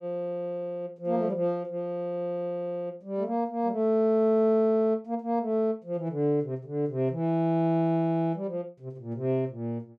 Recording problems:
none

